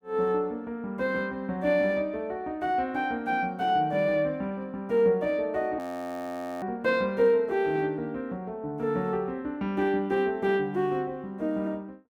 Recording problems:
audio freezing; at 6 s for 1 s

